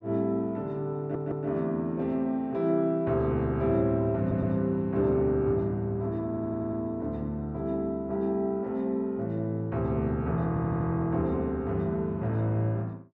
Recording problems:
stutter; 4 times, first at 1 s

